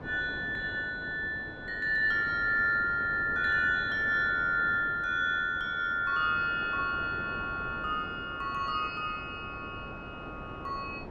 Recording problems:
wind on the microphone; below 680 Hz, SNR 15 dB

